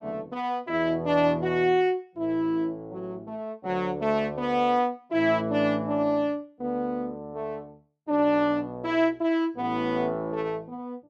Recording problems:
none

